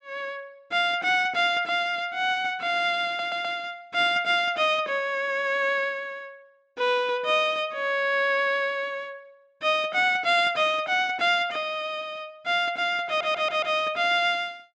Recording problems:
stutter; at 3 s and at 13 s

